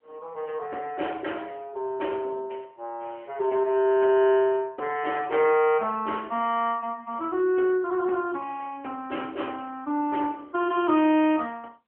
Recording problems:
phone line; 260 Hz to 3.1 kHz, AMR-NB

